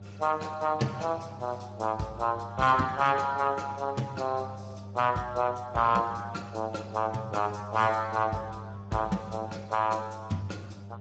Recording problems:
lossy codec; Speex, log-spectral distance 4 dB, nothing above 7.6 kHz
distortion; soft clipping, signal-to-distortion ratio 10 dB
hum; 50 Hz, harmonics up to 900 Hz, SNR 15 dB

